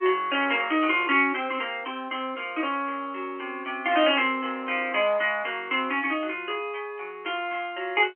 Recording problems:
phone line; 280 Hz to 3.2 kHz, G.711

